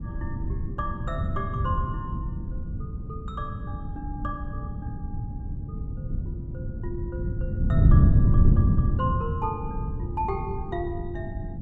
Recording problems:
wind on the microphone; below 150 Hz, SNR -7 dB

